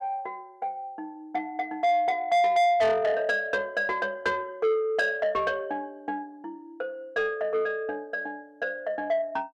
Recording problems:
distorted audio; soft clipping, signal-to-distortion ratio 7 dB

